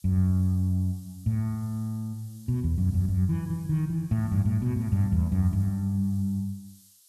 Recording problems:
hiss; SNR 27 dB

